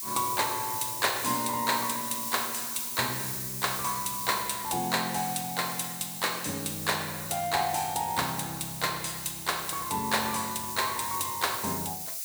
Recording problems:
hiss; SNR 4 dB

